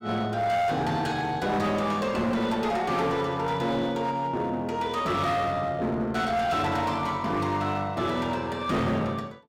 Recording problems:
distortion; hard clipping, uneven, signal-to-distortion ratio 10 dB

